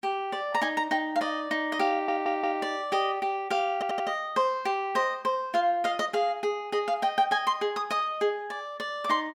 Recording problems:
audio stuttering; at 2 s and at 3.5 s

